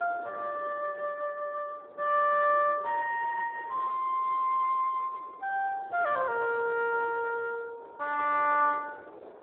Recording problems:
telephone audio; 320 Hz to 3.5 kHz, Speex
wind noise; below 720 Hz, SNR 20 dB

